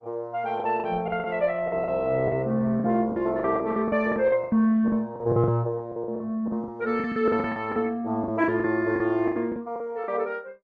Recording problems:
lossy compression; Opus, log-spectral distance 2 dB
lost packets; 16% of the sound replaced, filled with the last packet

